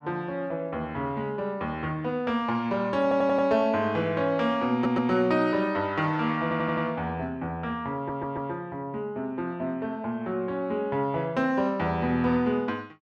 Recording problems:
stutter; 4 times, first at 3 s

